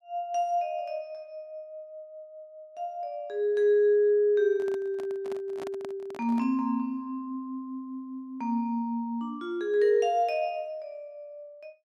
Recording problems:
microphone handling noise; from 4.5 to 6.5 s; peak -9 dB vs average level

